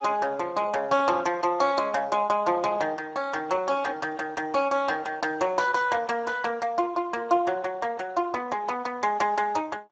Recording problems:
lossy codec; Speex, log-spectral distance 3 dB

